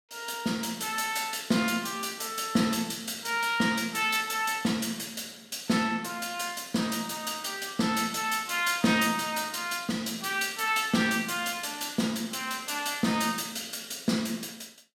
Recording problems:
none

